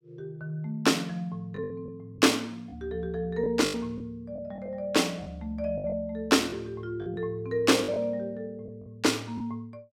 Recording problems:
packet loss; 7% of the sound replaced, filled with the last packet

